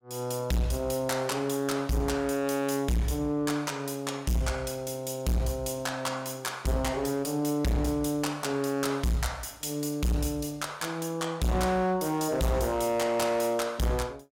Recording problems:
distorted audio; hard clipping, signal-to-distortion ratio 7 dB

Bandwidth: 16.5 kHz